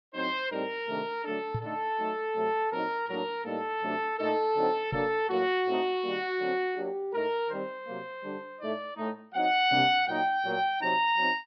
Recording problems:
treble cut off; nothing above 5.5 kHz
microphone thump; at 1.5 s and at 5 s; peak -1 dB vs average level

